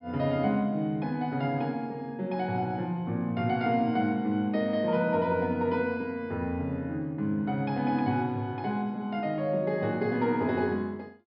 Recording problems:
low-pass filter; nothing above 5.5 kHz

